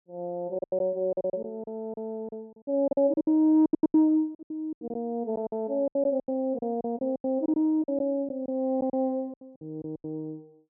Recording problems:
lost packets; 17% of the sound replaced, filled with silence

